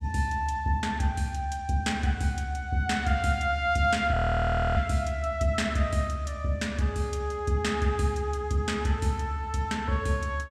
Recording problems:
frozen audio; at 4 s for 0.5 s

